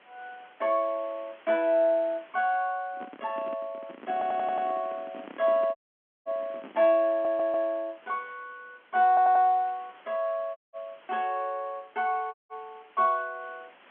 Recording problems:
phone line; 220 Hz to 3.3 kHz, G.711
background hiss; SNR 27 dB
microphone handling noise; from 3 to 7 s; peak -12 dB vs average level
audio stuttering; at 4 s, at 7 s and at 9 s
audio cutting out; at 6 s for 0.5 s, at 11 s and at 12 s

